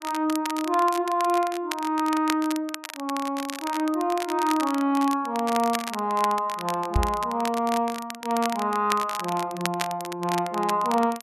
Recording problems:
crackling; vinyl, SNR 11 dB
microphone thump; at 7 s; peak +5 dB vs average level

